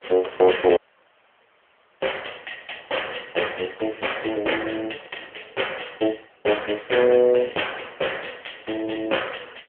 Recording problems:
telephone audio; 320 Hz to 3.3 kHz, AMR-NB
dropout; at 1 s for 1 s

